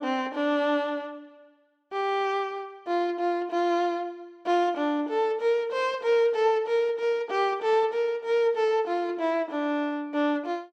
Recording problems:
none

